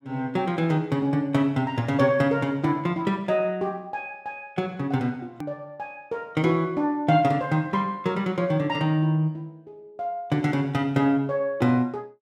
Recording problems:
click at an edit; at 5.5 s

